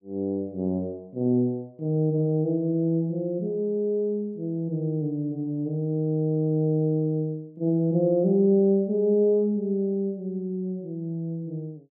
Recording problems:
none

